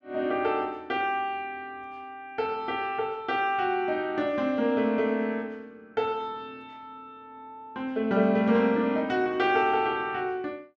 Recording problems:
none

